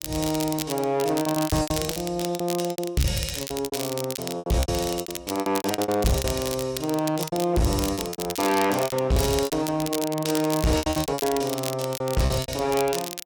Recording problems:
distortion; hard clipping, uneven, signal-to-distortion ratio 11 dB
crackling; vinyl, SNR 8 dB
packet loss; 18% of the sound replaced, filled with repeated pitch periods

